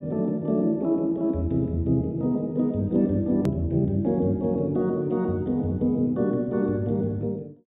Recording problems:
treble missing; nothing above 4 kHz
click at an edit; at 3.5 s

